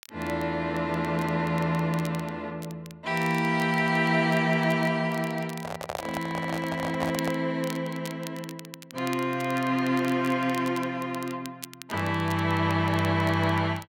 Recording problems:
crackling; vinyl, SNR 19 dB
microphone handling noise; from 5.5 to 7.5 s; peak -1 dB vs average level

